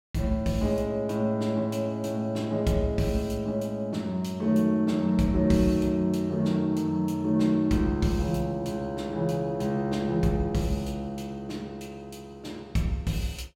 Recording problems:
none

